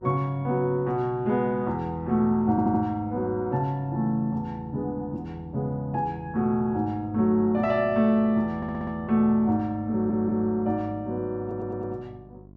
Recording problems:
electrical hum; 50 Hz, harmonics up to 750 Hz, SNR 23 dB
audio stuttering; 4 times, first at 2.5 s

